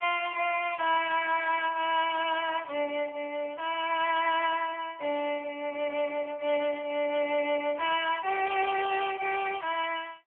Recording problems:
phone line; 340 Hz to 3.2 kHz, AMR-NB

